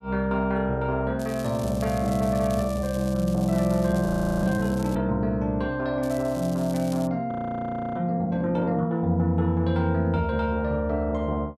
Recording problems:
crackling; from 1 to 5 s and from 6 to 7 s; loose cable, SNR 19 dB
frozen audio; at 4 s and at 7.5 s for 0.5 s

